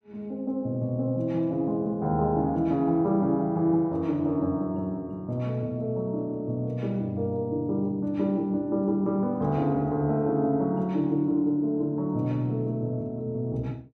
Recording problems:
none

